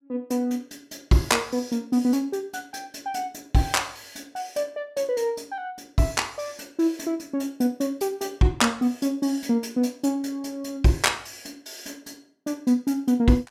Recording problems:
none

